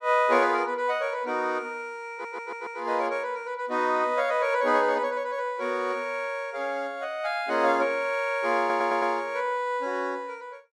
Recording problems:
audio stuttering; at 2 s and at 8.5 s

